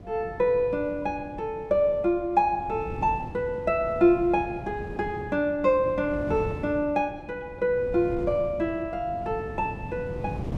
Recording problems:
wind on the microphone; below 290 Hz, SNR 13 dB

